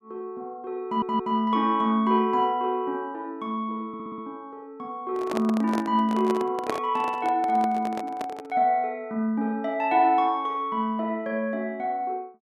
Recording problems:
audio stuttering; at 1 s and at 4 s
microphone handling noise; from 5 to 8.5 s; peak 0 dB vs average level

